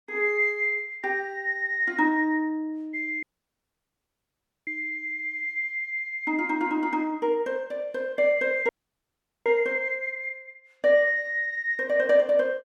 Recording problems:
audio cutting out; at 3 s for 1.5 s and at 8.5 s for 1 s

